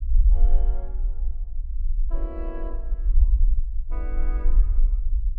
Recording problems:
low-frequency rumble; below 44 Hz, SNR -15 dB

